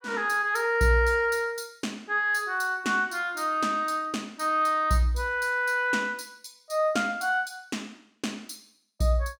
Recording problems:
none

